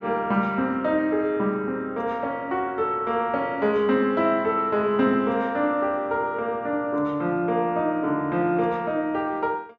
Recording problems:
none

